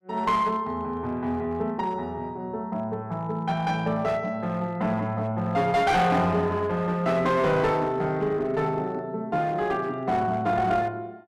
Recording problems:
distortion; hard clipping, uneven, signal-to-distortion ratio 10 dB

